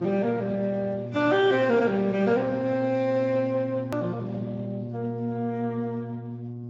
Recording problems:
lossy compression; Speex, then AAC, log-spectral distance 2 dB, nothing above 17.1 kHz
mains hum; 60 Hz, harmonics up to 720 Hz, SNR 10 dB
hard cut with a click; at 4 s

